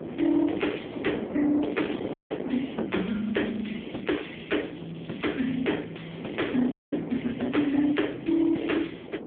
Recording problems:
phone line; 170 Hz to 3.4 kHz, AMR-NB
distortion; soft clipping, signal-to-distortion ratio 8 dB
wind noise; below 520 Hz, SNR 10 dB
audio cutting out; at 2 s and at 6.5 s
crackling; from 3.5 to 5.5 s; loose cable, SNR 22 dB

